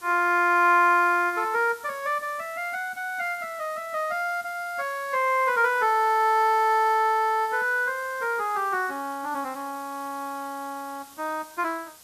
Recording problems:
background hiss; slope 0 dB per octave, SNR 22 dB

